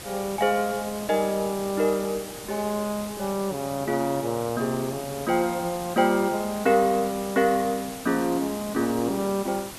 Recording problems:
background hiss; slope -2 dB per octave, SNR 12 dB

